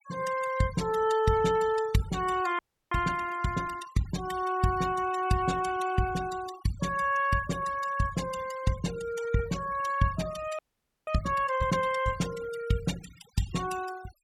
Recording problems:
noise reduction artefacts; signal-to-artefact ratio 15 dB
frozen audio; at 2.5 s and at 11 s

